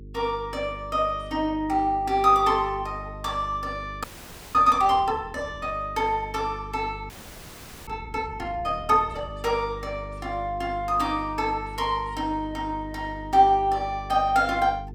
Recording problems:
hum; 50 Hz, harmonics up to 450 Hz, SNR 16 dB
audio freezing; at 4 s for 0.5 s and at 7 s for 1 s

